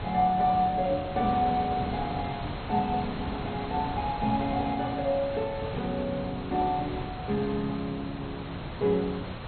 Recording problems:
codec artefacts; MP2, log-spectral distance 8 dB, nothing above 3.6 kHz
background hiss; SNR 7 dB

